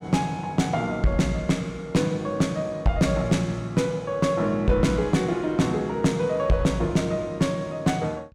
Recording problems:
distortion; hard clipping, uneven, signal-to-distortion ratio 11 dB

